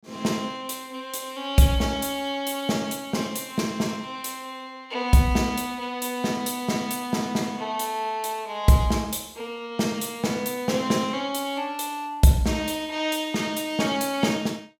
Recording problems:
none

